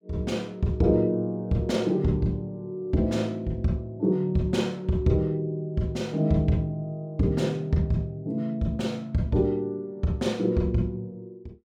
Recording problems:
none

